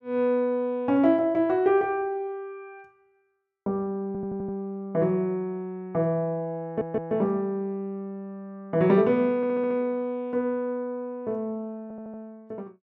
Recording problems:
stutter; 4 times, first at 4 s

